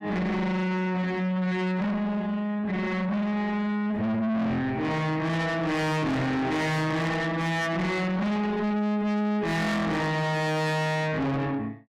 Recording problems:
distortion; soft clipping, signal-to-distortion ratio 6 dB

